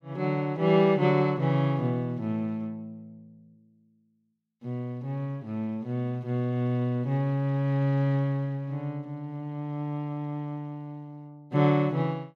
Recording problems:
none

